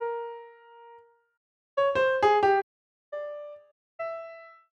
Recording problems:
dropout; at 1.5 s, at 2.5 s for 0.5 s and at 3.5 s

